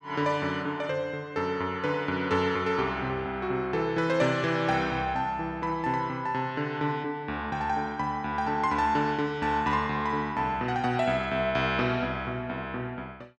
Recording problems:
none

